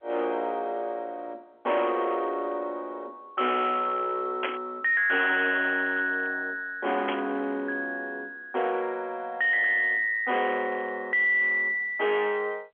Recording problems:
phone line; 240 Hz to 3.5 kHz, G.711
distorted audio; hard clipping, signal-to-distortion ratio 10 dB
static burst; at 4.5 s and at 7 s; peak +1 dB vs average level

